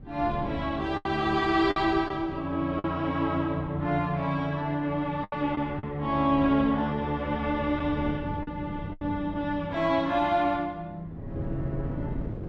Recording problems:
wind noise; below 240 Hz, SNR 14 dB
packet loss; 4% of the sound replaced, filled with the last packet

